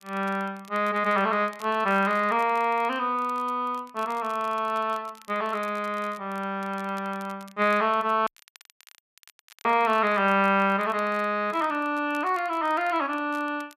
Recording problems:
crackle; vinyl, SNR 27 dB
dropout; at 8.5 s for 1.5 s

